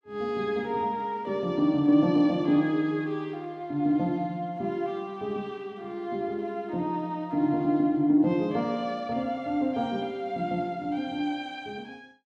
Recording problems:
none

